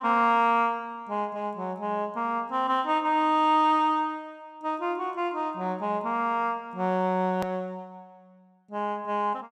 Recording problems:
edit click; at 7.5 s

